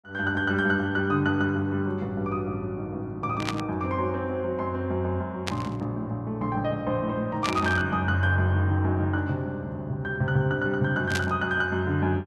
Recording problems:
static burst; 4 times, first at 3.5 s; peak +1 dB vs average level

